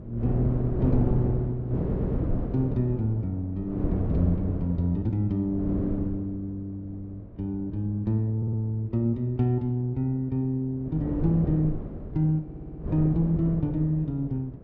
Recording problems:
wind noise; below 290 Hz, SNR 4 dB
audio stuttering; at 2 s, at 8.5 s and at 12 s

